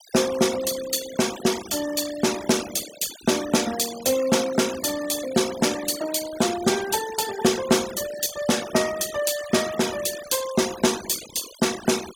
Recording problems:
noise reduction artefacts; signal-to-artefact ratio 12 dB

